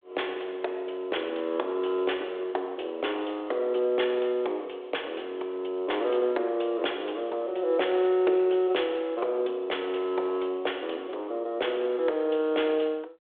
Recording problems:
telephone audio; 320 Hz to 3.6 kHz, G.726

